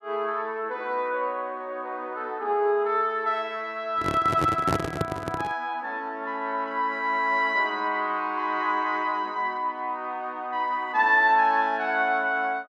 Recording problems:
handling noise; from 4 to 5.5 s; peak +3 dB vs average level

